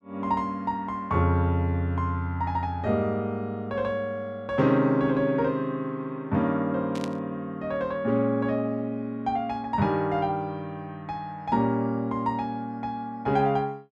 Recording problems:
burst of static; at 7 s; peak -7 dB vs average level

